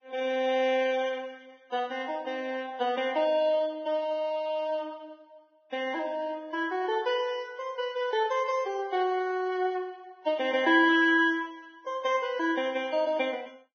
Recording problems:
lossy compression; Vorbis, log-spectral distance 2 dB, nothing above 6.3 kHz

